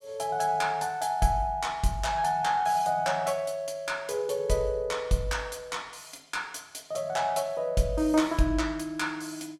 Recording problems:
none

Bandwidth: 16 kHz